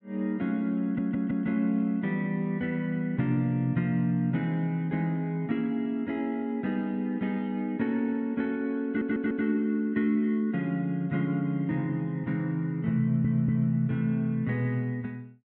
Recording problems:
stutter; at 1 s, at 9 s and at 13 s

